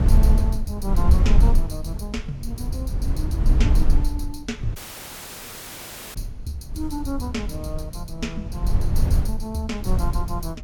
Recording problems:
wind noise; below 68 Hz, SNR -7 dB
dropout; at 5 s for 1.5 s

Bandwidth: 18.5 kHz